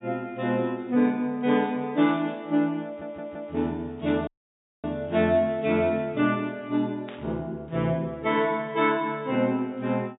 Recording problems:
treble missing; nothing above 4 kHz
burst of static; at 2 s, at 4 s and at 7 s; peak -13 dB vs average level
stutter; at 3 s
audio cutting out; at 4.5 s for 0.5 s

